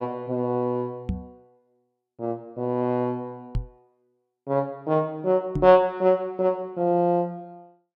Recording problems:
microphone bump; at 1 s, at 3.5 s and at 5.5 s; peak 0 dB vs average level

